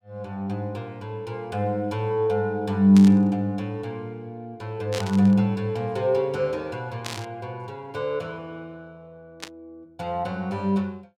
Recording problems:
burst of static; 4 times, first at 3 s; peak -4 dB vs average level

